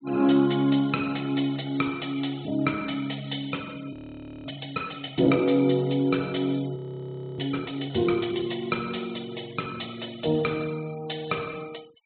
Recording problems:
treble missing; nothing above 4 kHz
noise reduction artefacts; signal-to-artefact ratio 23 dB
audio freezing; at 4 s for 0.5 s and at 7 s for 0.5 s

